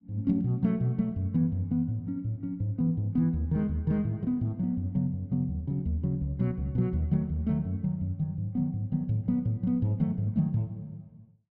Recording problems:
none

